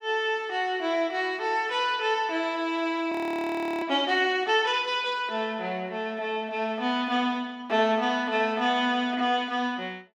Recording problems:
audio freezing; at 3 s for 0.5 s

